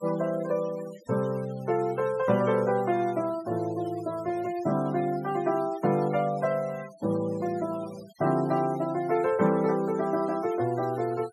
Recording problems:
denoising artefacts; signal-to-artefact ratio 21 dB

